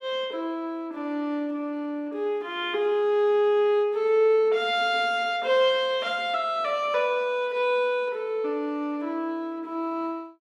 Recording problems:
none

